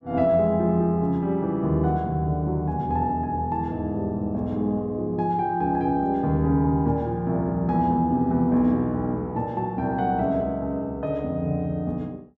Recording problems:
none

